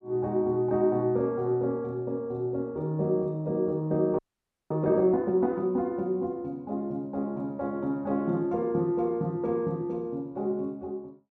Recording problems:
frozen audio; at 4 s for 0.5 s

